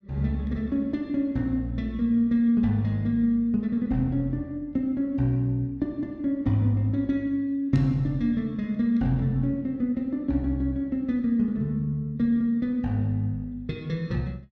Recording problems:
none

